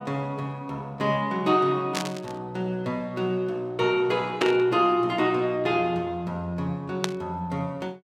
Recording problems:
burst of static; at 2 s, at 4.5 s and at 7 s; peak +3 dB vs average level

